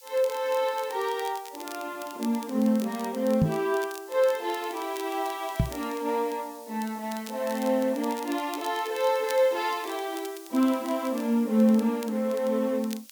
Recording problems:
hiss; SNR 20 dB
crackle; vinyl, SNR 19 dB
microphone thump; at 3.5 s and at 5.5 s; peak +7 dB vs average level

